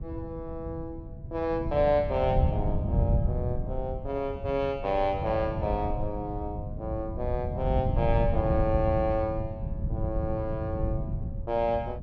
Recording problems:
wind noise; below 140 Hz, SNR 2 dB

